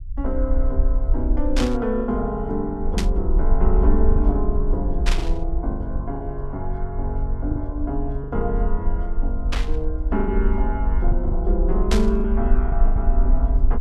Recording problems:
rumble; below 50 Hz, SNR -2 dB
lost packets; 6% of the sound replaced, filled with the last packet
static burst; 5 times, first at 1.5 s; peak +4 dB vs average level

